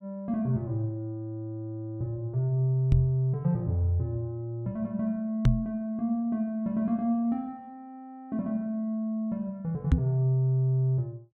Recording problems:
microphone bump; at 3 s, at 5.5 s and at 10 s; peak +10 dB vs average level

